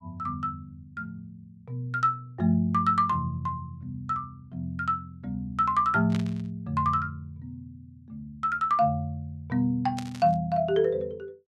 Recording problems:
static burst; at 6 s and at 10 s; peak -7 dB vs average level

